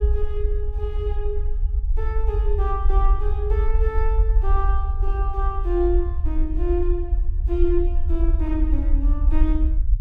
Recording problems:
low-frequency rumble; below 56 Hz, SNR -5 dB

